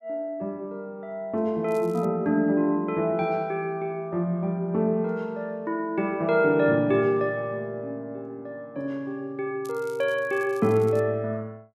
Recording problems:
crackle; at 1.5 s and from 9.5 to 11 s; loose cable, SNR 26 dB

